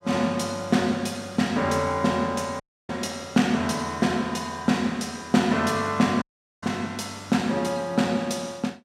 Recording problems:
audio cutting out; at 2.5 s and at 6 s

